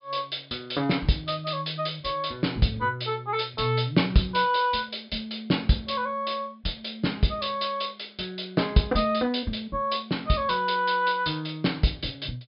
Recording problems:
treble cut off; nothing above 5.5 kHz

